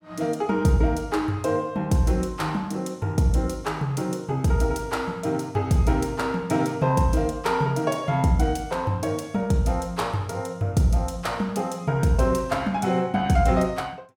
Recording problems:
none

